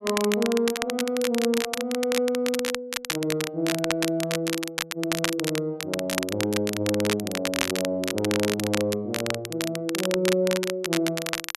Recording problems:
crackling; vinyl, SNR 3 dB

